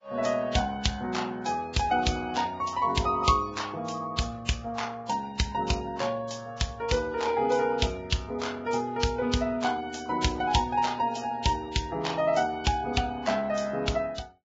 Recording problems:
codec artefacts; Vorbis, log-spectral distance 4 dB, nothing above 7.3 kHz

